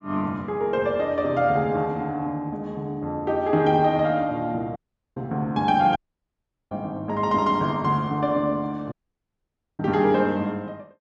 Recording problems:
dropout; at 5 s, at 6 s for 1 s and at 9 s for 1 s

